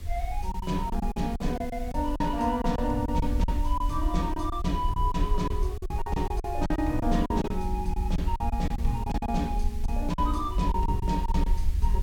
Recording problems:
background hiss; SNR 19 dB
low-frequency rumble; below 64 Hz, SNR 2 dB
lost packets; 11% of the sound replaced, filled with silence

